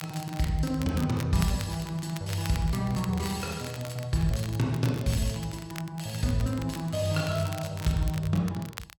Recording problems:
crackle; vinyl, SNR 15 dB

